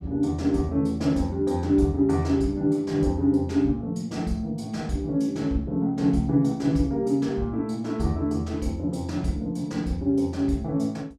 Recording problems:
none

